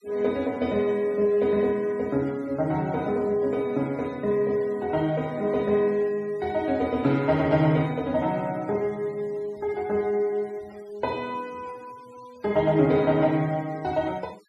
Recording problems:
noise reduction artefacts; signal-to-artefact ratio 25 dB

